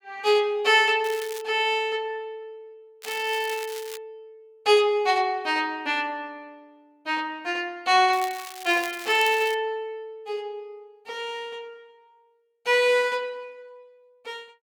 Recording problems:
crackle; at 1 s, at 3 s and from 8 to 9.5 s; loose cable, SNR 16 dB

